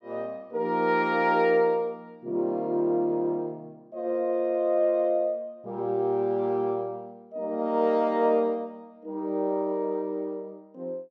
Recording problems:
none

